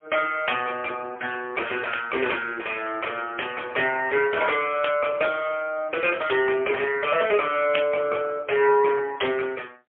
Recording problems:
phone line; 280 Hz to 3.3 kHz, AMR-NB, then MP3

